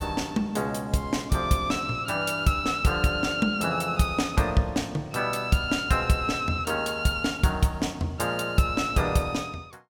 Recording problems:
none

